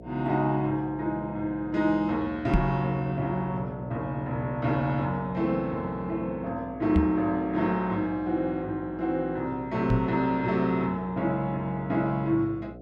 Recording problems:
electrical hum; 60 Hz, harmonics up to 720 Hz, SNR 16 dB
microphone thump; at 2.5 s, at 7 s and at 10 s; peak +7 dB vs average level

